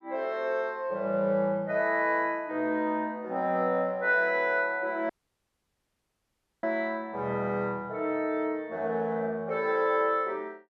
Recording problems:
audio cutting out; at 5 s for 1.5 s

